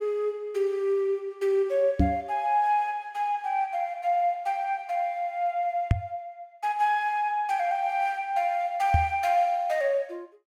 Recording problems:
microphone bump; at 2 s, at 6 s and at 9 s; peak +8 dB vs average level

